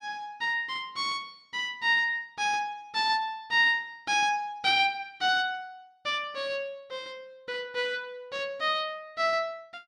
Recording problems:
none

